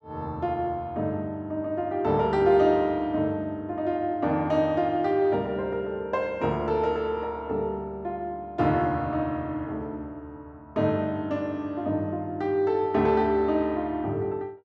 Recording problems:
none

